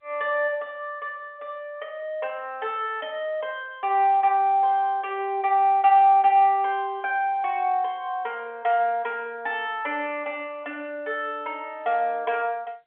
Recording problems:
telephone audio; 240 Hz to 3.5 kHz, G.711

